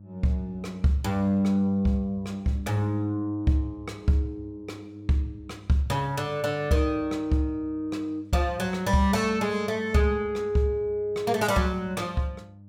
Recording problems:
hum; 50 Hz, harmonics up to 600 Hz, SNR 21 dB

